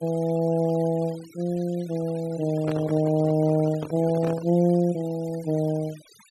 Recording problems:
denoising artefacts; signal-to-artefact ratio 23 dB
microphone handling noise; from 2.5 to 4.5 s; peak -5 dB vs average level

